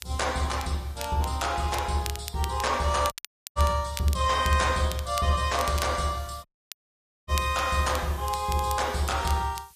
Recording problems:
codec artefacts; MP3, log-spectral distance 3 dB, nothing above 10.4 kHz
hiss; slope +5 dB per octave, SNR 25 dB
crackle; vinyl, SNR 14 dB
dropout; at 3 s and at 6.5 s for 1 s

